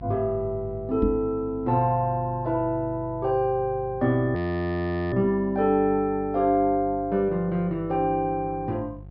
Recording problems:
treble cut off; nothing above 5.5 kHz
hum; 50 Hz, harmonics up to 750 Hz, SNR 17 dB
knock on the microphone; at 1 s; peak +3 dB vs average level
frozen audio; at 4.5 s for 1 s

